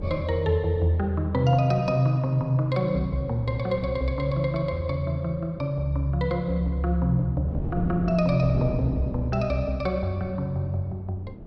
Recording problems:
wind noise; below 270 Hz, SNR 14 dB

